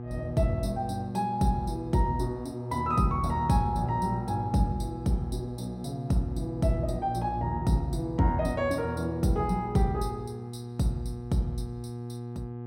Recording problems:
mains hum; 60 Hz, harmonics up to 840 Hz, SNR 9 dB

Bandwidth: 16 kHz